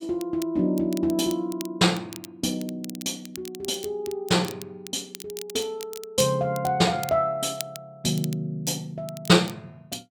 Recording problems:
crackling; vinyl, SNR 16 dB

